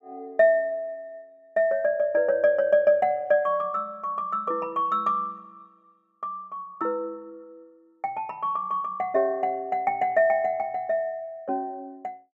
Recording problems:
none

